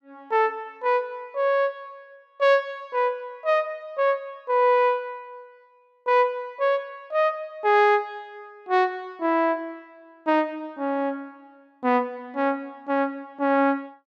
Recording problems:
none

